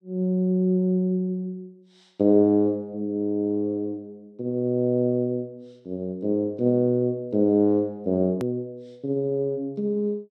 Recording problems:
hard cut with a click; at 8.5 s

